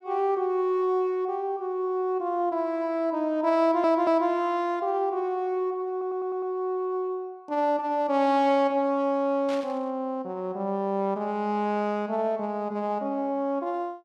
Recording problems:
audio stuttering; at 3.5 s and at 6 s
static burst; at 9.5 s; peak -10 dB vs average level

